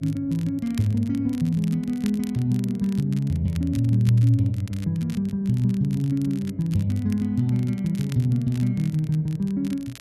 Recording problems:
electrical hum; 60 Hz, harmonics up to 660 Hz, SNR 32 dB
crackle; vinyl, SNR 23 dB

